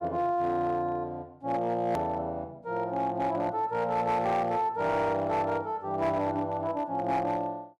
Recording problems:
distortion; hard clipping, signal-to-distortion ratio 12 dB
click at an edit; at 2 s

